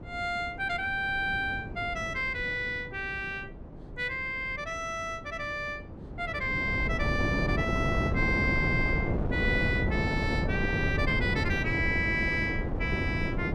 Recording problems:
wind on the microphone; below 330 Hz, SNR 2 dB

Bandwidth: 14.5 kHz